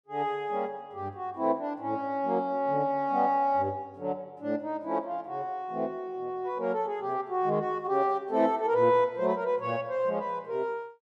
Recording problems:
none

